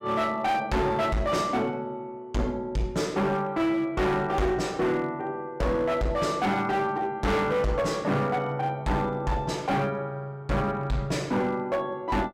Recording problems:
distorted audio; hard clipping, signal-to-distortion ratio 7 dB

